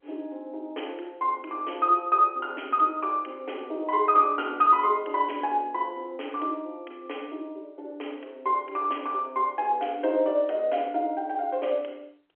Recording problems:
telephone audio; 280 Hz to 3.3 kHz, G.711

